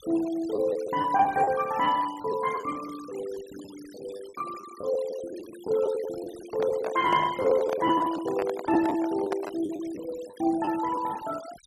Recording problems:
denoising artefacts; signal-to-artefact ratio 18 dB
lost packets; 9% of the sound replaced, filled with the last packet
microphone handling noise; from 6.5 to 9.5 s; peak -1 dB vs average level

